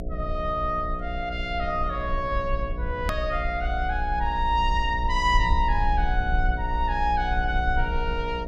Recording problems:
electrical hum; 60 Hz, harmonics up to 720 Hz, SNR 11 dB
low-frequency rumble; below 58 Hz, SNR 4 dB
edit click; at 3 s

